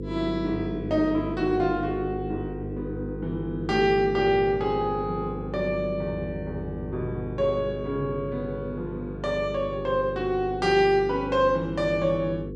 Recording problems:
electrical hum; 50 Hz, harmonics up to 500 Hz, SNR 8 dB

